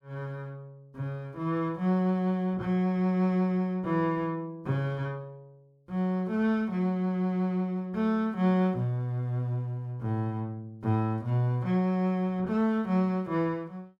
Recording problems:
none

